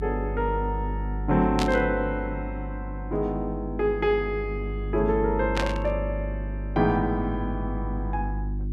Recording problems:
mains hum; 50 Hz, harmonics up to 350 Hz, SNR 5 dB
burst of static; at 1.5 s and at 5.5 s; peak +1 dB vs average level

